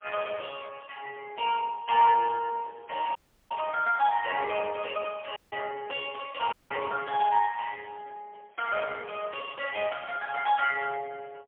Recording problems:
phone line; 340 Hz to 3.3 kHz, AMR-NB, then MP3
dropout; at 3 s, at 5.5 s and at 6.5 s

